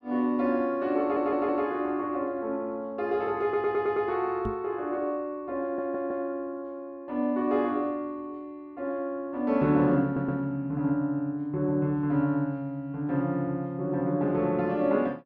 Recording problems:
audio stuttering; 4 times, first at 1 s
microphone bump; at 4.5 s; peak -2 dB vs average level

